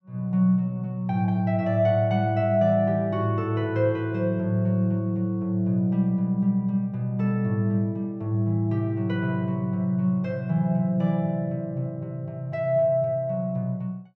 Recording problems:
none

